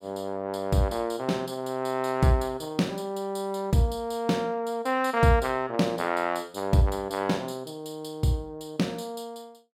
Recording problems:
none

